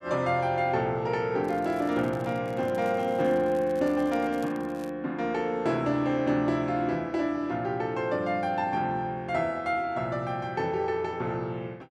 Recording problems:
crackle; from 1.5 to 5 s; loose cable, SNR 26 dB

